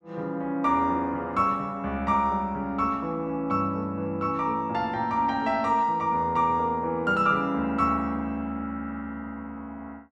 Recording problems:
none

